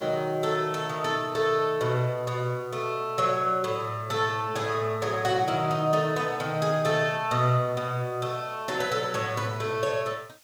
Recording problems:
hiss; slope +1 dB per octave, SNR 29 dB

